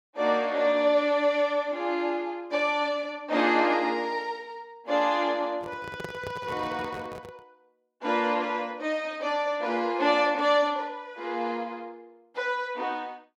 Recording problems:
microphone handling noise; from 5.5 to 7.5 s; peak -6 dB vs average level

